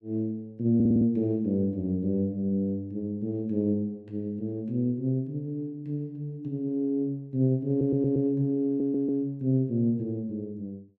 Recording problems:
audio stuttering; at 1 s, at 7.5 s and at 8.5 s

